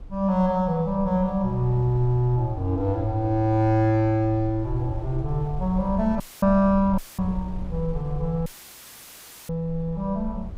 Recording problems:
wind noise; below 72 Hz, SNR 13 dB
audio cutting out; at 6 s, at 7 s and at 8.5 s for 1 s; filled with static

